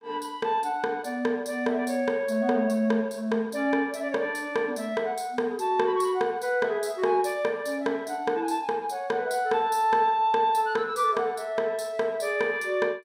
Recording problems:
none

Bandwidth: 15.5 kHz